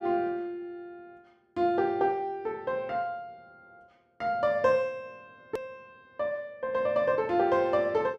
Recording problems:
edit click; at 5.5 s

